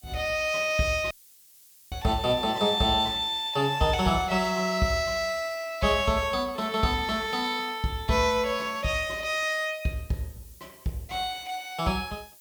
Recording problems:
background hiss; SNR 24 dB
audio cutting out; at 1 s for 1 s

